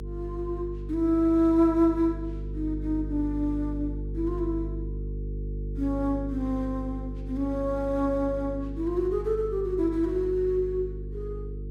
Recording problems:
hum; 50 Hz, harmonics up to 450 Hz, SNR 8 dB

